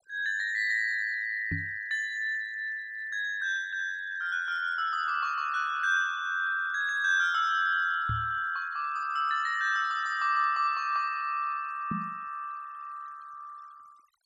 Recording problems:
denoising artefacts; signal-to-artefact ratio 26 dB
microphone thump; at 1.5 s, at 8 s and at 12 s; peak -2 dB vs average level

